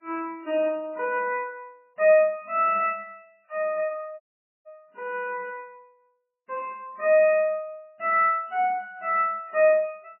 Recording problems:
codec artefacts; MP3, log-spectral distance 2 dB, nothing above 2.7 kHz
dropout; at 4 s

